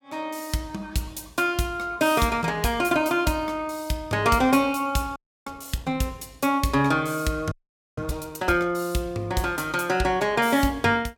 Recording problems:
frozen audio; at 5 s and at 7.5 s

